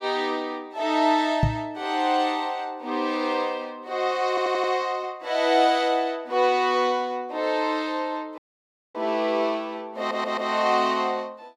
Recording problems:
microphone thump; at 1.5 s; peak +6 dB vs average level
audio stuttering; at 4.5 s and at 10 s
audio cutting out; at 8.5 s for 0.5 s

